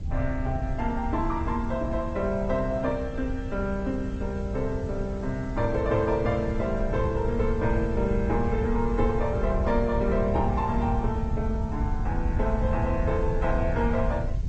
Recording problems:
codec artefacts; G.722, then Opus, log-spectral distance 2 dB
hiss; SNR 29 dB
wind noise; below 92 Hz, SNR 4 dB

